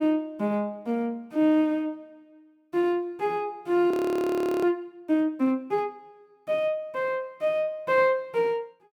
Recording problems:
audio freezing; at 4 s for 0.5 s

